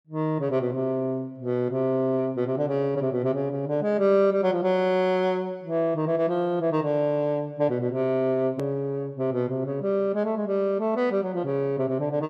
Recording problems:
edit click; at 8.5 s

